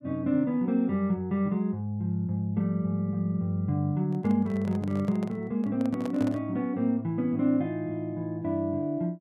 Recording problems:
handling noise; from 4 to 6.5 s; peak -6 dB vs average level

